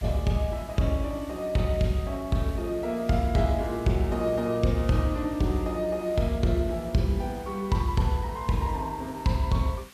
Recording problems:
hiss; SNR 22 dB

